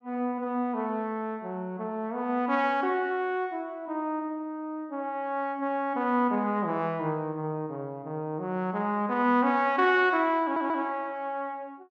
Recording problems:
audio stuttering; at 10 s

